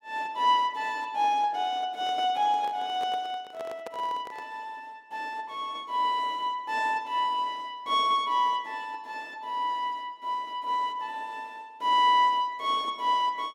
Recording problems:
microphone handling noise; from 2 to 4.5 s; peak -8 dB vs average level

